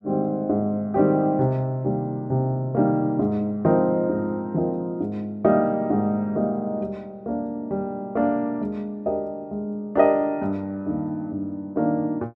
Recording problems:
none

